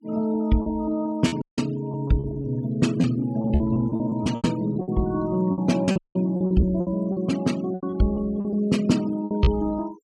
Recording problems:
noise reduction artefacts; signal-to-artefact ratio 20 dB
packet loss; 12% of the sound replaced, filled with repeated pitch periods
dropout; at 1.5 s and at 6 s

